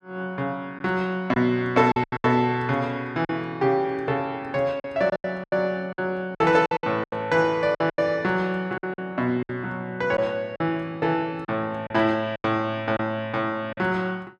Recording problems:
packet loss; 9% of the sound replaced, filled with silence

